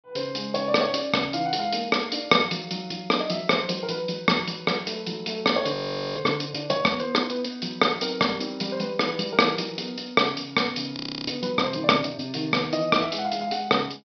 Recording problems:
low-pass filter; nothing above 5.5 kHz
frozen audio; at 5.5 s and at 11 s

